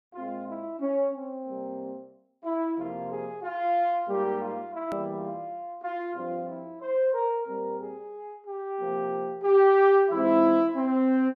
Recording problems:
click at an edit; at 5 s

